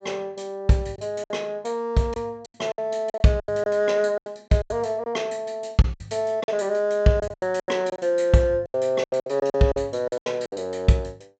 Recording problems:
treble cut off; nothing above 8 kHz
lost packets; 13% of the sound replaced, filled with silence

